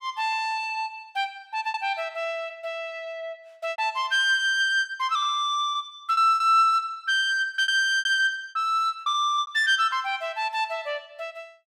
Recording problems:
lost packets; 8% of the sound replaced, filled with repeated pitch periods

